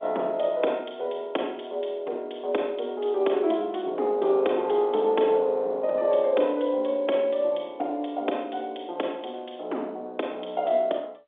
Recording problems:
telephone audio; 240 Hz to 3.6 kHz, G.711

